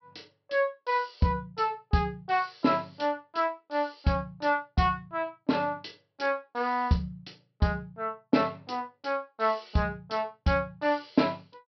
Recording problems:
treble cut off; nothing above 5.5 kHz

